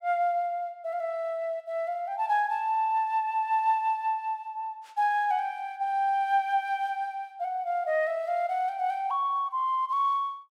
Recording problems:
none

